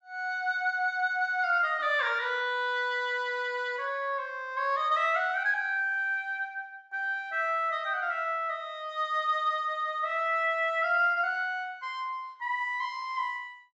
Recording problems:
low-pass filter; nothing above 7.8 kHz

